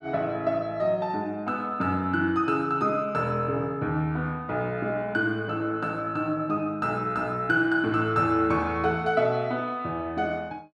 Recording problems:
none

